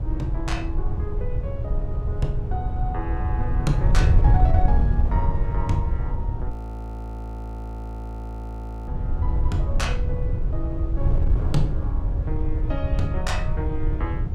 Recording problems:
wind noise; below 86 Hz, SNR -7 dB
audio freezing; at 6.5 s for 2.5 s

